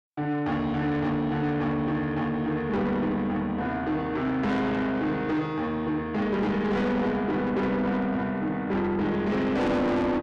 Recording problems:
distorted audio; soft clipping, signal-to-distortion ratio 8 dB

